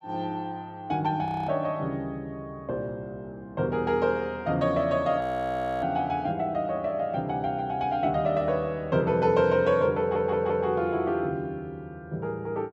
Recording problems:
audio freezing; at 1.5 s and at 5 s for 0.5 s
audio stuttering; at 10 s

